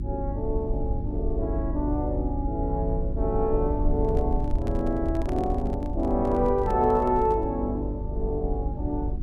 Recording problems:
electrical hum; 50 Hz, harmonics up to 350 Hz, SNR 7 dB
low-frequency rumble; below 72 Hz, SNR 6 dB
microphone handling noise; from 4 to 7.5 s; peak -5 dB vs average level

